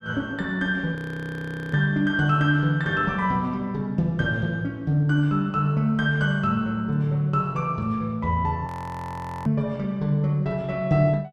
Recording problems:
audio freezing; at 1 s for 1 s and at 8.5 s for 1 s

